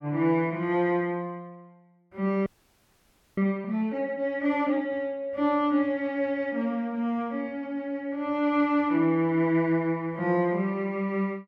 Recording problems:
frozen audio; at 2.5 s for 1 s

